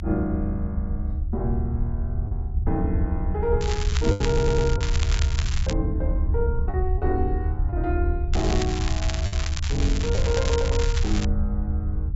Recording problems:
treble cut off; nothing above 8 kHz
rumble; below 76 Hz, SNR -2 dB
lost packets; 3% of the sound replaced, filled with the last packet
crackle; from 3.5 to 5.5 s and from 8.5 to 11 s; loose cable, SNR 5 dB
stutter; at 4.5 s

